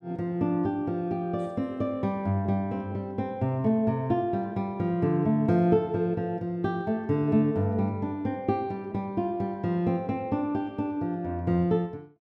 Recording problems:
none

